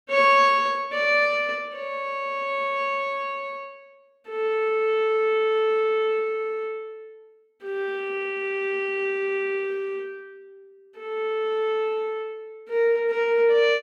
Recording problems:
none

